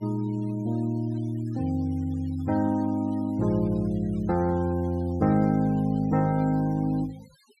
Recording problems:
noise reduction artefacts; signal-to-artefact ratio 25 dB

